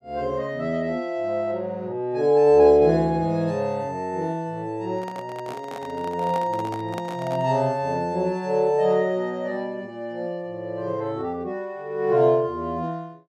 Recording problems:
microphone handling noise; from 5 to 7.5 s; peak -6 dB vs average level

